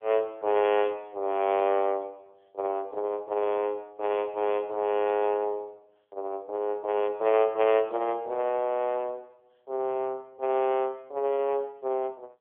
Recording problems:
phone line; 340 Hz to 3.4 kHz, AMR-NB

